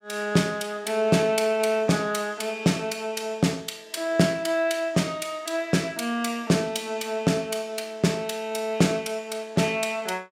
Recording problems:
none

